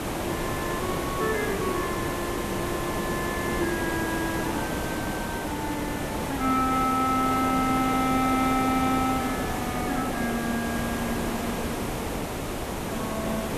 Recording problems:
background hiss; slope -6 dB per octave, SNR 1 dB

